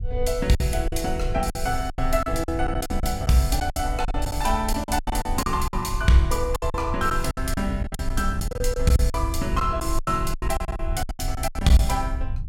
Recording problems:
low-frequency rumble; below 68 Hz, SNR 6 dB
packet loss; 15% of the sound replaced, filled with silence

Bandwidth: 16 kHz